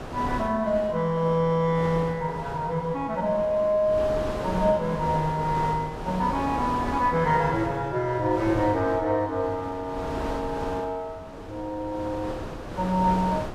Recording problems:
wind on the microphone; below 870 Hz, SNR 10 dB

